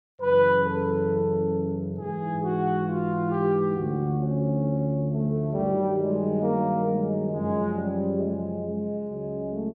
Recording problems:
none

